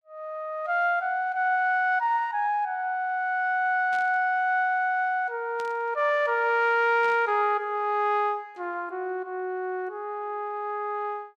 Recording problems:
static burst; at 4 s, at 5.5 s and at 7 s; peak -14 dB vs average level

